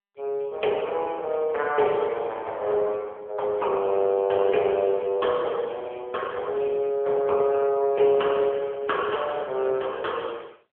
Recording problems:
telephone audio; 340 Hz to 3.3 kHz, AMR-NB

